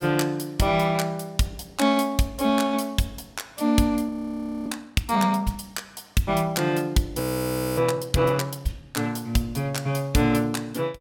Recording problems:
audio freezing; at 4 s for 0.5 s and at 7 s for 0.5 s

